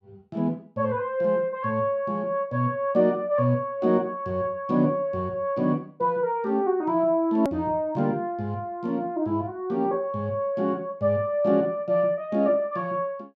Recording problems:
hard cut with a click; at 7.5 s

